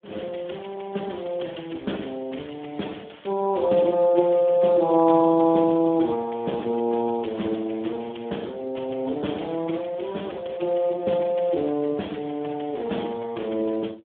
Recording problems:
telephone audio; 170 Hz to 3.5 kHz, Speex

